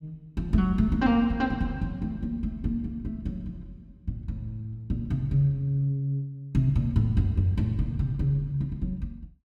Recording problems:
none

